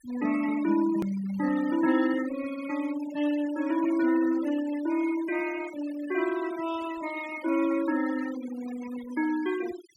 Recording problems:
denoising artefacts; signal-to-artefact ratio 14 dB
edit click; at 1 s

